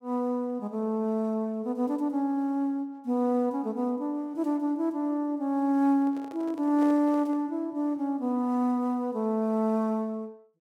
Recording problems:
microphone handling noise; from 6 to 7.5 s; peak -10 dB vs average level

